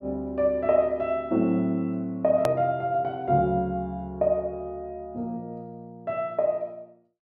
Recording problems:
click at an edit; at 2.5 s

